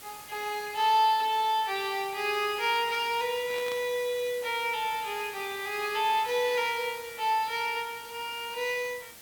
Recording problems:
background hiss; slope -1 dB per octave, SNR 16 dB
burst of static; at 3.5 s; peak -9 dB vs average level

